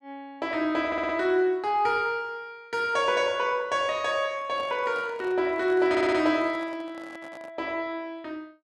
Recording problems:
stutter; at 1 s and at 6 s
handling noise; from 4.5 to 7.5 s; peak -12 dB vs average level

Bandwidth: 12 kHz